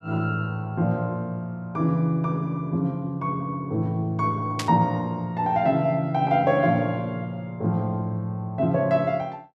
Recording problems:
burst of static; at 4.5 s; peak 0 dB vs average level

